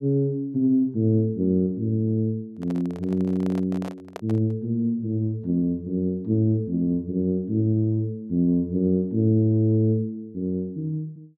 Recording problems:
microphone handling noise; from 2.5 to 4.5 s; peak -7 dB vs average level

